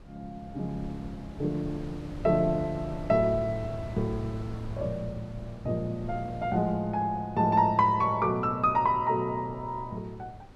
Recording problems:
wind noise; below 230 Hz, SNR 16 dB

